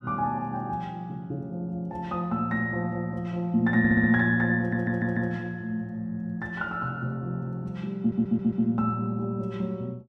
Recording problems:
audio stuttering; at 4 s, at 4.5 s and at 8 s

